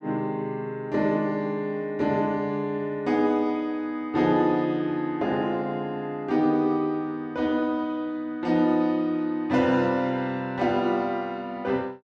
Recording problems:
none

